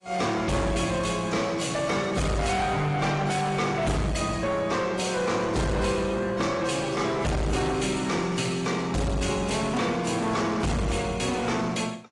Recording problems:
lossy codec; AAC, log-spectral distance 4 dB, nothing above 10.4 kHz
distortion; soft clipping, signal-to-distortion ratio 5 dB

